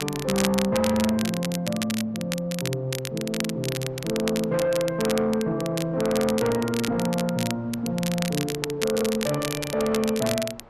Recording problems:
distorted audio; soft clipping, signal-to-distortion ratio 11 dB
wind noise; below 1 kHz, SNR 23 dB
crackling; vinyl, SNR 7 dB

